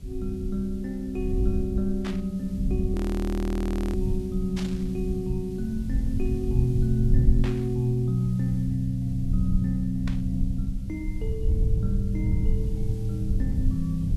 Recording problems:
background hiss; slope +1 dB per octave, SNR 27 dB
rumble; below 84 Hz, SNR 2 dB
static burst; 4 times, first at 2 s; peak -4 dB vs average level
frozen audio; at 3 s for 1 s

